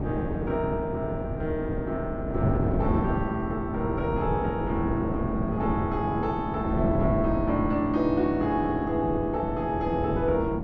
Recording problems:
wind on the microphone; below 360 Hz, SNR 2 dB

